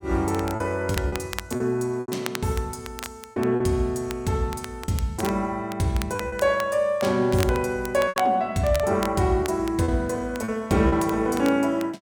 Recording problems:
crackle; vinyl, SNR 15 dB
lost packets; 6% of the sound replaced, filled with repeated pitch periods

